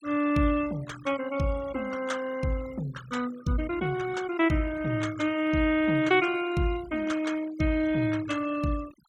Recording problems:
noise reduction artefacts; signal-to-artefact ratio 17 dB

